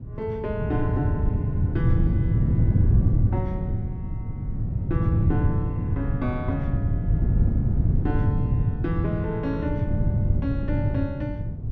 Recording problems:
wind on the microphone; below 140 Hz, SNR -7 dB

